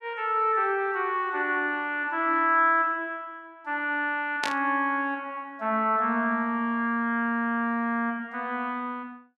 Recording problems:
burst of static; at 4.5 s; peak +1 dB vs average level

